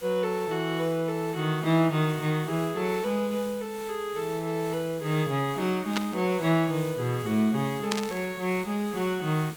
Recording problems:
background hiss; slope -1 dB per octave, SNR 17 dB
burst of static; at 6 s and at 8 s; peak +3 dB vs average level

